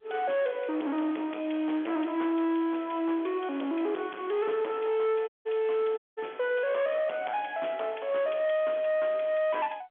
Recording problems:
telephone audio; 240 Hz to 3.4 kHz, G.711
distortion; hard clipping, uneven, signal-to-distortion ratio 11 dB
dropout; at 5.5 s and at 6 s

